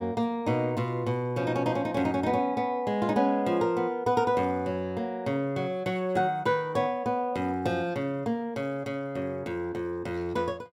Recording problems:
none

